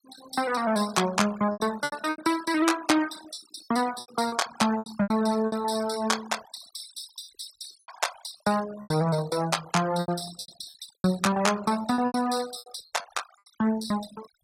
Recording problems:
denoising artefacts; signal-to-artefact ratio 14 dB
lost packets; 12% of the sound replaced, filled with repeated pitch periods

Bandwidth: 16 kHz